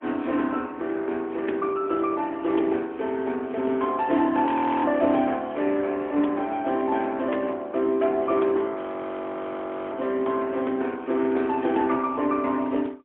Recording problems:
phone line; 220 Hz to 3.6 kHz, AMR-NB, then MP3
audio freezing; at 4.5 s and at 9 s for 1 s

